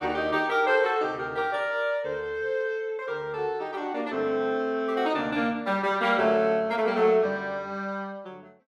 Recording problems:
none

